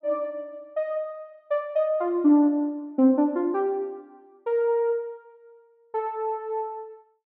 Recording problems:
none

